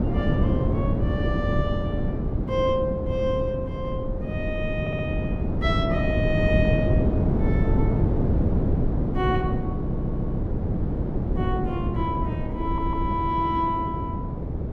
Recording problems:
wind noise; below 250 Hz, SNR -3 dB
stutter; at 5 s, at 10 s and at 13 s

